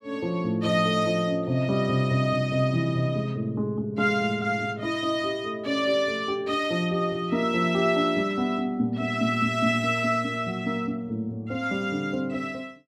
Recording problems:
none

